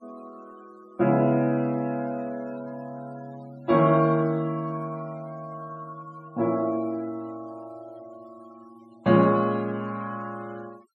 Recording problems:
noise reduction artefacts; signal-to-artefact ratio 27 dB

